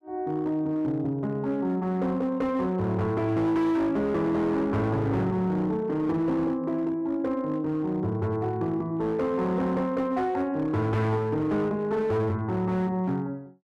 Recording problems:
distortion; hard clipping, signal-to-distortion ratio 11 dB

